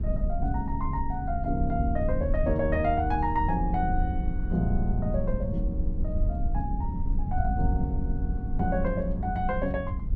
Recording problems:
low-frequency rumble; below 74 Hz, SNR 1 dB

